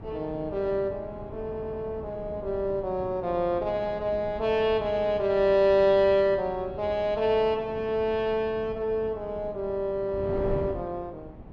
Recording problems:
wind on the microphone; below 420 Hz, SNR 14 dB
stutter; at 1.5 s

